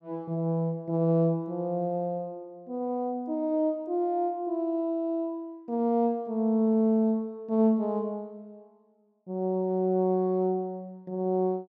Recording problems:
none

